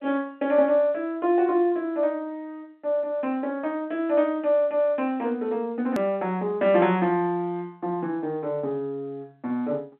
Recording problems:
telephone audio; 220 Hz to 3.4 kHz, G.711
hard cut with a click; at 6 s

